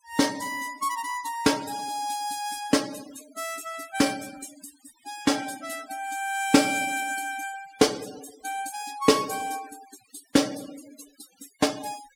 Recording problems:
denoising artefacts; signal-to-artefact ratio 17 dB

